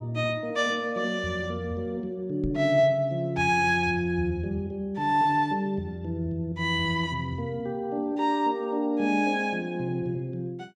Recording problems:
knock on the microphone; at 2.5 s; peak -2 dB vs average level

